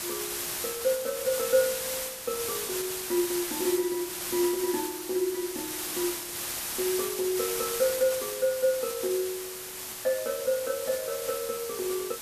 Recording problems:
hiss; slope 0 dB per octave, SNR 3 dB

